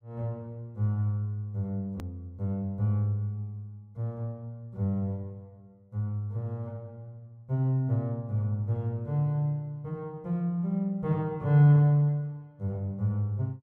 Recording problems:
click at an edit; at 2 s

